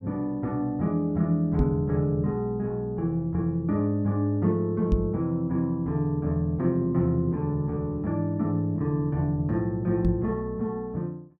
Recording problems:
microphone thump; at 1.5 s, at 5 s and at 10 s; peak +6 dB vs average level

